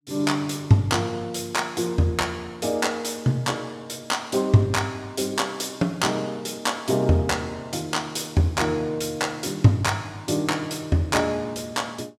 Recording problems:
none

